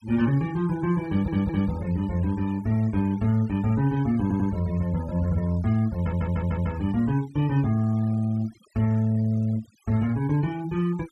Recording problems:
noise reduction artefacts; signal-to-artefact ratio 22 dB
audio stuttering; at 1 s, at 4 s and at 6 s

